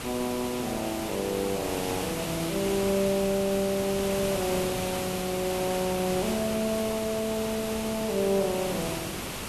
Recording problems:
hiss; slope -3 dB per octave, SNR 4 dB

